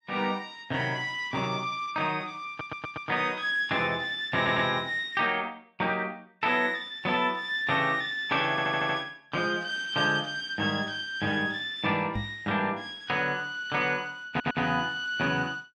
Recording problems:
stutter; 4 times, first at 2.5 s
knock on the microphone; at 12 s; peak -1 dB vs average level

